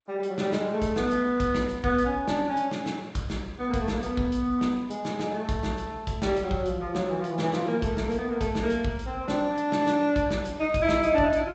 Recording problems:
codec artefacts; Vorbis, then G.722, log-spectral distance 2 dB, nothing above 7.8 kHz

